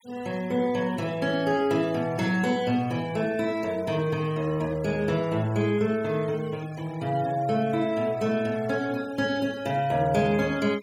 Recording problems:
denoising artefacts; signal-to-artefact ratio 22 dB

